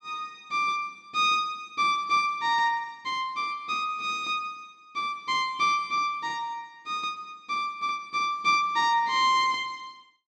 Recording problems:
none

